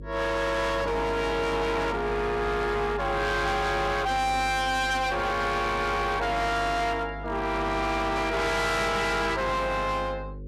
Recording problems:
distortion; hard clipping, uneven, signal-to-distortion ratio 6 dB
hum; 50 Hz, harmonics up to 550 Hz, SNR 13 dB

